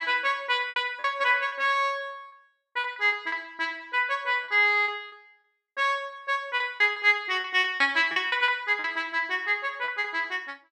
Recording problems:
packet loss; 10% of the sound replaced, filled with repeated pitch periods

